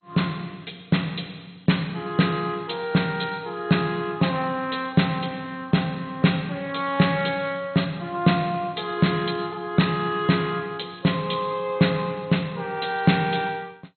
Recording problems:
codec artefacts; MP2, log-spectral distance 7 dB, nothing above 4.2 kHz

